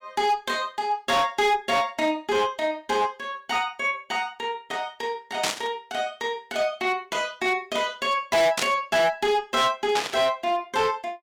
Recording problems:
distortion; hard clipping, signal-to-distortion ratio 7 dB
burst of static; at 5.5 s, at 8.5 s and at 10 s; peak +4 dB vs average level

